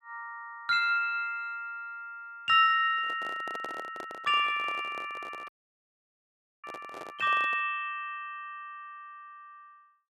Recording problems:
handling noise; from 3 to 7.5 s; peak -8 dB vs average level
dropout; at 5.5 s for 1 s

